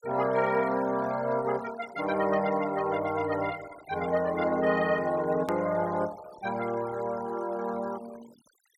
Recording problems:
noise reduction artefacts; signal-to-artefact ratio 19 dB
hard cut with a click; at 5.5 s

